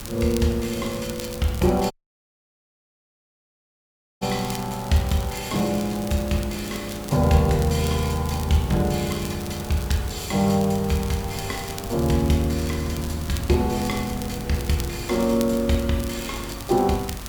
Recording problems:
hum; 50 Hz, harmonics up to 400 Hz, SNR 19 dB
background hiss; SNR 15 dB
wind noise; below 230 Hz, SNR 19 dB
crackling; vinyl, SNR 16 dB
audio cutting out; at 2 s for 2.5 s

